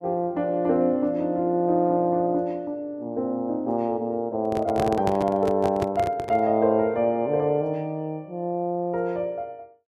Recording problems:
microphone handling noise; from 4.5 to 6.5 s; peak 0 dB vs average level

